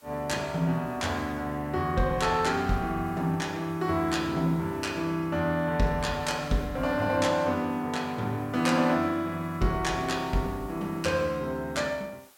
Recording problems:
background hiss; SNR 27 dB

